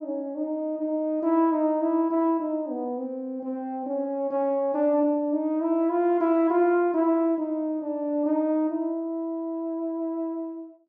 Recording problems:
treble missing; nothing above 7.7 kHz

